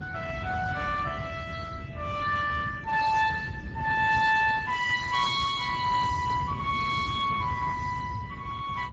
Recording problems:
codec artefacts; Speex, log-spectral distance 4 dB, nothing above 7.3 kHz
rumble; below 210 Hz, SNR 10 dB

